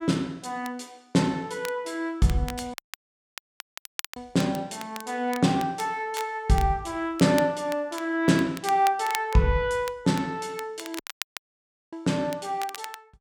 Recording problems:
crackle; vinyl, SNR 15 dB
dropout; at 2.5 s for 1.5 s and at 11 s for 1 s

